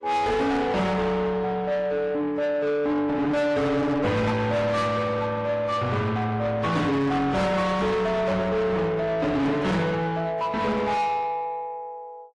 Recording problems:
lossy compression; AAC, then AAC, log-spectral distance 2 dB, nothing above 11 kHz
distorted audio; soft clipping, signal-to-distortion ratio 8 dB

